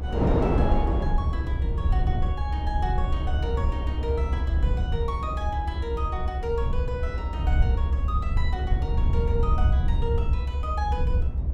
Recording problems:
low-frequency rumble; below 74 Hz, SNR -7 dB
wind on the microphone; below 460 Hz, SNR 1 dB

